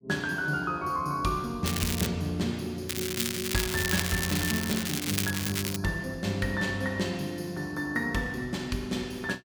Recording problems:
crackling; at 1.5 s and from 3 to 6 s; loose cable, SNR 1 dB

